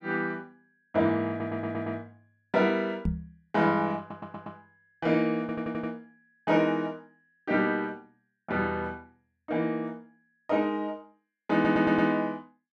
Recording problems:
audio stuttering; 4 times, first at 1.5 s
microphone thump; at 3 s; peak +3 dB vs average level

